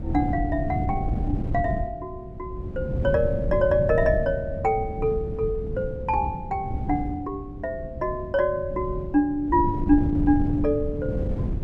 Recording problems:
wind on the microphone; below 170 Hz, SNR 5 dB

